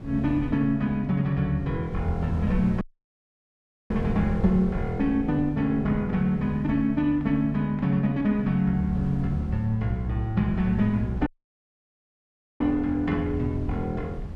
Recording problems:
wind on the microphone; below 140 Hz, SNR 11 dB
audio cutting out; at 3 s for 1 s and at 11 s for 1.5 s

